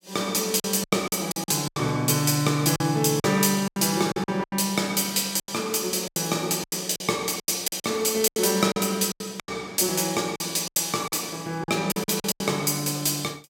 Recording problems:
lost packets; 13% of the sound replaced, filled with silence

